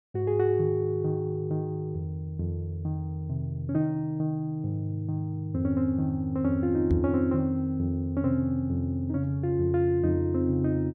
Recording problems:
knock on the microphone; at 7 s; peak +3 dB vs average level

